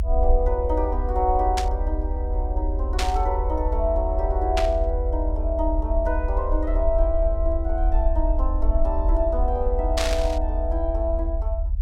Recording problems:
rumble; below 66 Hz, strongest tone 38 Hz, SNR -1 dB
static burst; 4 times, first at 1.5 s; peak +4 dB vs average level

